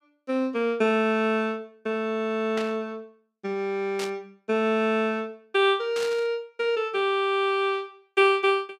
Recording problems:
static burst; at 2.5 s, at 4 s and at 6 s; peak -6 dB vs average level

